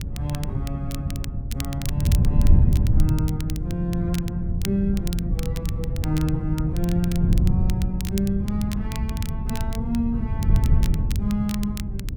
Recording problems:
wind on the microphone; below 120 Hz, SNR -3 dB
crackling; vinyl, SNR 11 dB

